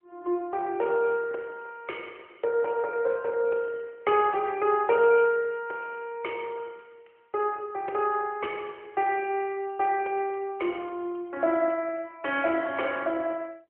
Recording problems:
phone line; 300 Hz to 3.1 kHz, AMR-NB

